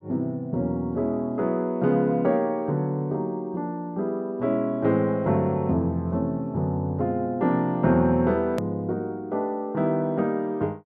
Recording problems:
edit click; at 8.5 s

